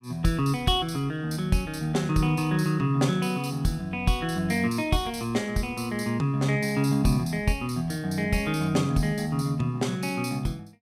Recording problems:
none

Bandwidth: 15.5 kHz